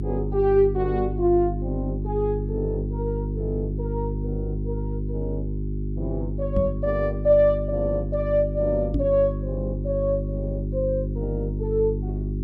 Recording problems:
hum; 50 Hz, harmonics up to 400 Hz, SNR 4 dB
microphone bump; at 6.5 s and at 9 s; peak +3 dB vs average level

